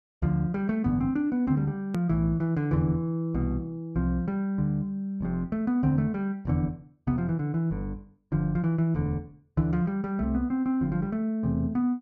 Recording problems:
click at an edit; at 2 s

